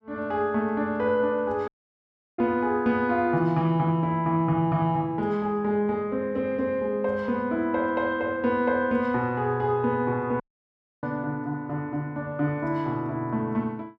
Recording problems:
audio cutting out; at 1.5 s for 0.5 s and at 10 s for 0.5 s

